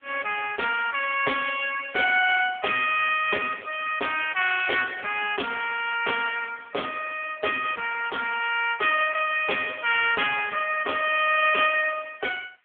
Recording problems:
phone line; 430 Hz to 3.2 kHz, AMR-NB
hiss; SNR 43 dB

